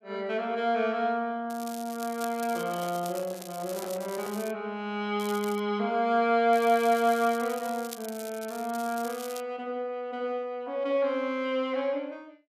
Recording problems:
crackling; from 1.5 to 4.5 s, at 5 s and from 6.5 to 9.5 s; loose cable, SNR 15 dB
handling noise; from 2.5 to 4.5 s; peak -9 dB vs average level

